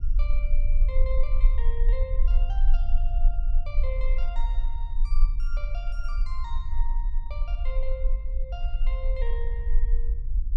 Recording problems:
low-frequency rumble; below 36 Hz, strongest tone 22 Hz, SNR -13 dB

